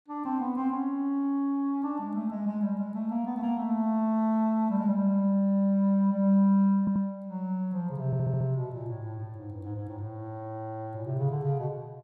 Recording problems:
stutter; at 7 s and at 8 s

